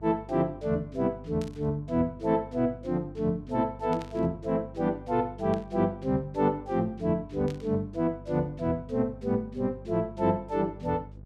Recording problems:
hum; 50 Hz, harmonics up to 600 Hz, SNR 18 dB
burst of static; 4 times, first at 1.5 s; peak -12 dB vs average level

